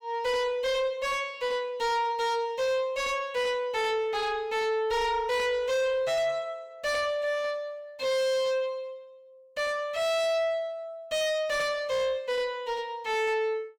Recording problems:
distortion; soft clipping, signal-to-distortion ratio 5 dB

